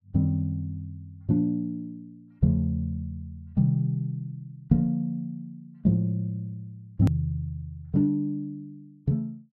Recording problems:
hard cut with a click; at 7 s

